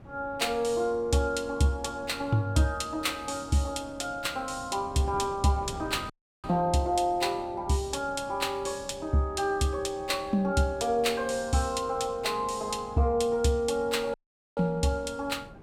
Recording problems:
wind on the microphone; below 380 Hz, SNR 19 dB
dropout; at 6 s and at 14 s

